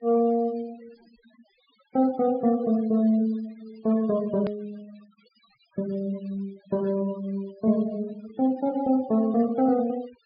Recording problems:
treble missing; nothing above 5 kHz
noise reduction artefacts; signal-to-artefact ratio 23 dB
edit click; at 4.5 s

